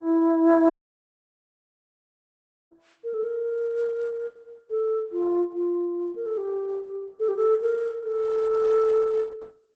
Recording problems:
lossy compression; Opus, log-spectral distance 2 dB, nothing above 7.8 kHz
audio cutting out; at 0.5 s for 2 s

